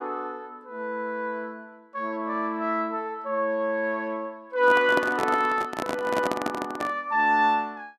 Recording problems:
handling noise; from 4.5 to 7 s; peak +2 dB vs average level

